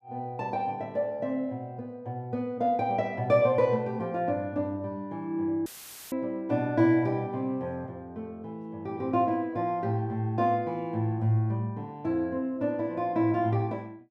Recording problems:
audio cutting out; at 5.5 s; filled with static

